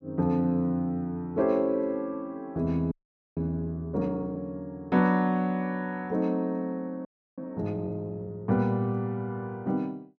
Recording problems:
frozen audio; at 3 s and at 7 s

